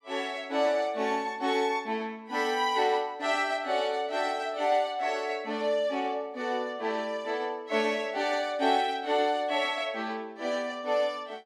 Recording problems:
none

